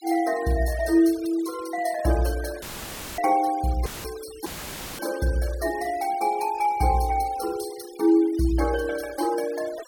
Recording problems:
noise reduction artefacts; signal-to-artefact ratio 18 dB
audio cutting out; at 2.5 s for 0.5 s, at 4 s and at 4.5 s for 0.5 s; filled with static

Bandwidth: 17 kHz